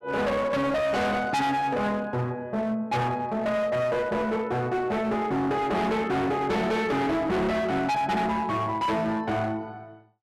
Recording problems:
distortion; hard clipping, signal-to-distortion ratio 6 dB

